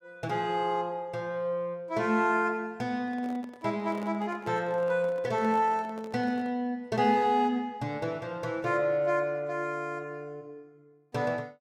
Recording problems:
handling noise; from 3 to 6.5 s; peak -10 dB vs average level

